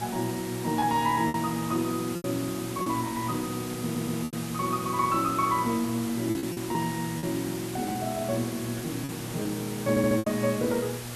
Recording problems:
electrical hum; 60 Hz, harmonics up to 1.2 kHz, SNR 12 dB
background hiss; slope -2 dB per octave, SNR 10 dB
lost packets; 6% of the sound replaced, filled with repeated pitch periods
stutter; at 4 s and at 10 s

